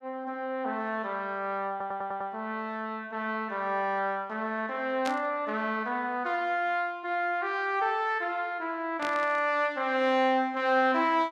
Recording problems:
audio stuttering; at 1.5 s
static burst; at 5 s and at 9 s; peak -3 dB vs average level

